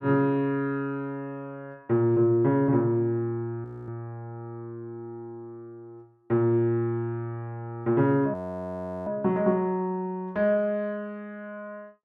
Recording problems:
audio freezing; at 3.5 s and at 8.5 s for 0.5 s

